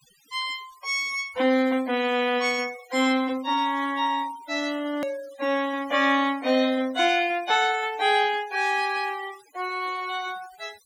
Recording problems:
denoising artefacts; signal-to-artefact ratio 20 dB
edit click; at 5 s

